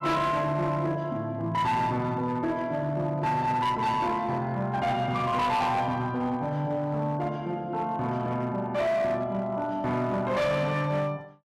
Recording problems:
distortion; hard clipping, signal-to-distortion ratio 11 dB

